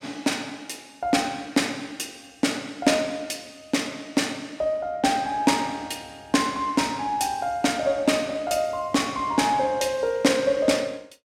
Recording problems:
none

